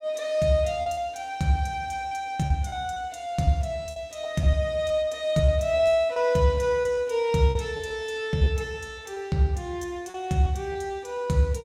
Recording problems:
lost packets; 7% of the sound replaced, filled with repeated pitch periods

